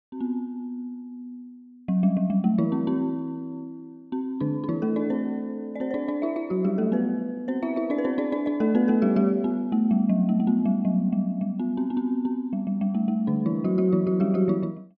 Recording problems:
none

